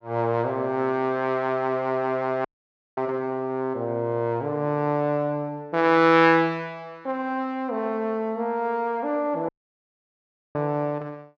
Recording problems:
dropout; at 2.5 s for 0.5 s and at 9.5 s for 1 s

